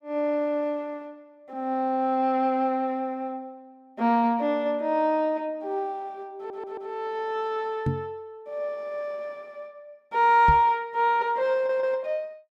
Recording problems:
stutter; at 6.5 s and at 12 s
microphone bump; at 8 s and at 10 s; peak +3 dB vs average level

